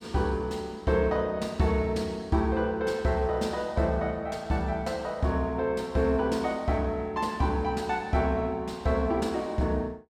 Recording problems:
none

